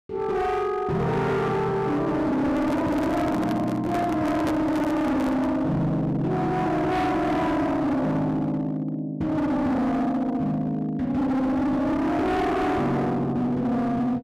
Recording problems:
distorted audio; hard clipping, signal-to-distortion ratio 7 dB
microphone handling noise; from 2.5 to 5.5 s; peak 0 dB vs average level

